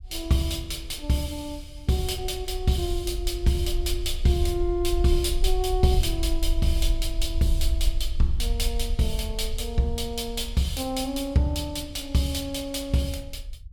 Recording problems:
rumble; below 54 Hz, SNR 4 dB

